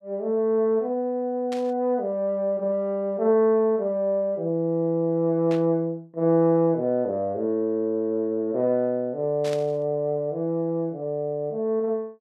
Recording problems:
static burst; at 1.5 s, at 5.5 s and at 9.5 s; peak -10 dB vs average level

